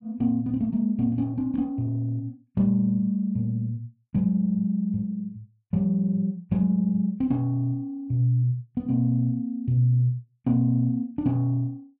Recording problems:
none

